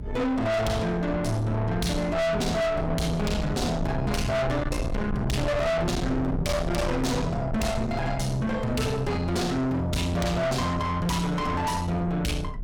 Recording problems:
distorted audio; soft clipping, signal-to-distortion ratio 6 dB
low-frequency rumble; below 370 Hz, SNR 7 dB

